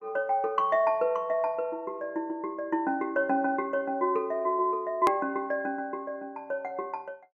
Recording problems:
edit click; at 5 s

